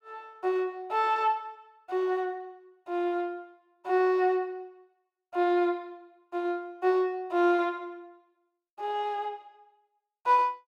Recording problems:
none

